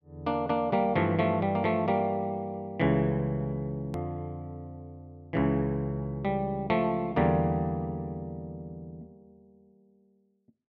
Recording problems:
hard cut with a click; at 4 s

